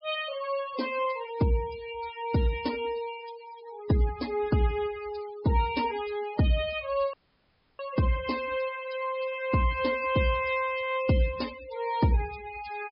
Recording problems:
treble missing; nothing above 5.5 kHz
denoising artefacts; signal-to-artefact ratio 15 dB
audio cutting out; at 7 s for 0.5 s

